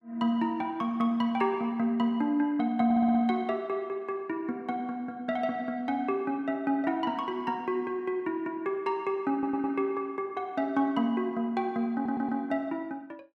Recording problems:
audio stuttering; at 3 s, at 9.5 s and at 12 s

